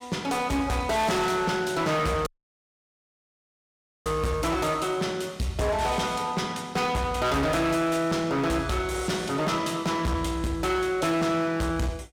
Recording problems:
distorted audio; hard clipping, uneven, signal-to-distortion ratio 7 dB
audio cutting out; at 2.5 s for 2 s

